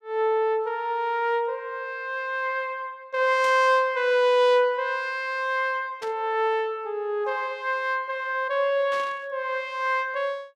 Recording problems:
burst of static; at 3.5 s, at 6 s and at 9 s; peak -10 dB vs average level

